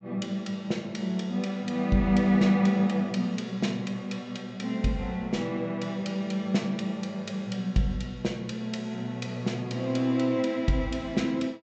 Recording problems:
treble missing; nothing above 8 kHz

